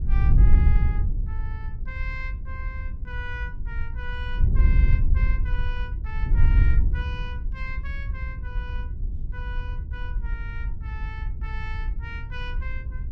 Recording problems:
wind noise; below 68 Hz, SNR -12 dB

